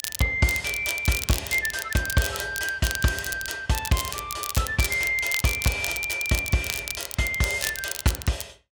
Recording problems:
crackling; vinyl, SNR 6 dB

